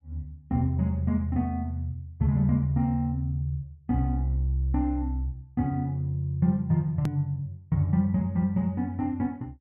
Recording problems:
hard cut with a click; at 7 s

